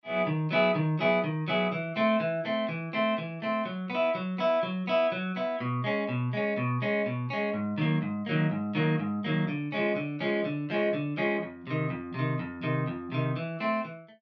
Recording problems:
none

